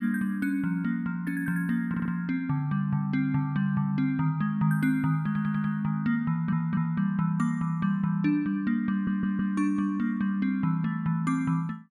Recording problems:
audio stuttering; 4 times, first at 2 s

